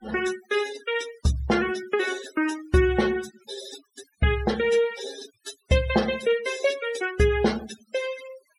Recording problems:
denoising artefacts; signal-to-artefact ratio 15 dB

